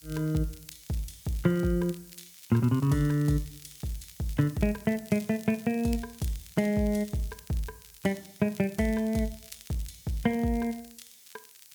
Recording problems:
hiss; SNR 22 dB
crackle; vinyl, SNR 22 dB

